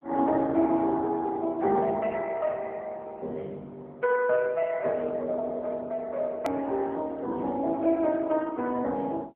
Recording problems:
phone line; 220 Hz to 2.5 kHz, AMR-NB
click at an edit; at 6.5 s

